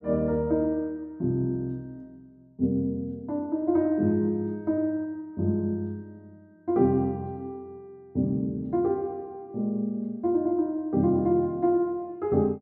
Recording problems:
none

